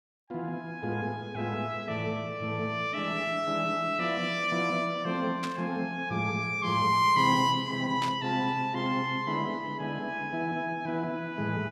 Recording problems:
static burst; at 5.5 s and at 8 s; peak -3 dB vs average level

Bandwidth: 14.5 kHz